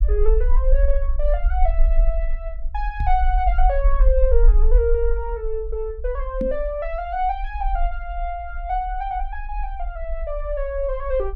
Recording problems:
low-frequency rumble; below 44 Hz, SNR -2 dB
microphone bump; at 3 s and at 6.5 s; peak +2 dB vs average level

